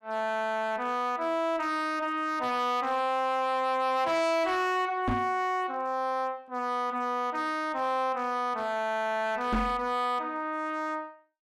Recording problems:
distorted audio; hard clipping, signal-to-distortion ratio 11 dB
knock on the microphone; at 5 s and at 9.5 s; peak +3 dB vs average level

